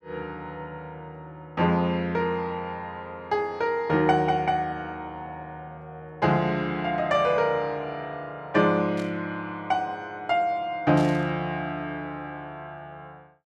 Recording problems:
burst of static; at 9 s and at 11 s; peak -11 dB vs average level

